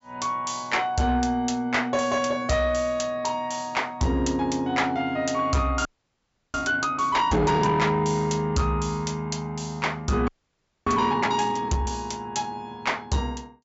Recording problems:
low-pass filter; nothing above 8 kHz
distortion; soft clipping, signal-to-distortion ratio 11 dB
audio freezing; at 6 s for 0.5 s and at 10 s for 0.5 s

